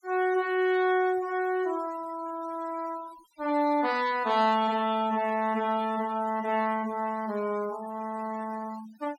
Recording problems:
noise reduction artefacts; signal-to-artefact ratio 20 dB

